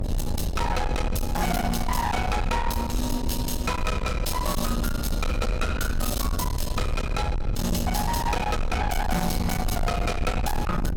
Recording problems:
distortion; soft clipping, signal-to-distortion ratio 7 dB
hum; 60 Hz, harmonics up to 600 Hz, SNR 14 dB
rumble; below 170 Hz, SNR 2 dB

